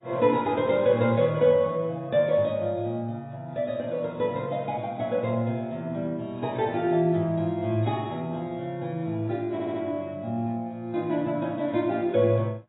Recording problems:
codec artefacts; AAC, log-spectral distance 2 dB, nothing above 3.8 kHz
audio stuttering; at 9.5 s

